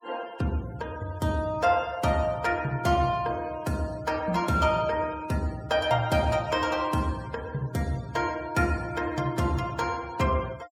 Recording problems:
noise reduction artefacts; signal-to-artefact ratio 22 dB

